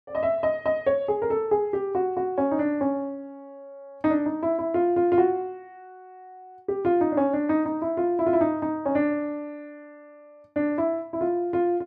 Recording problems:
none

